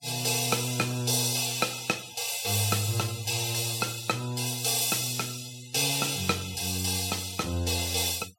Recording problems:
denoising artefacts; signal-to-artefact ratio 21 dB

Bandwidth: 16 kHz